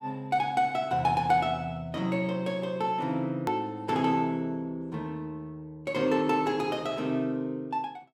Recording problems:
hard cut with a click; at 3.5 s

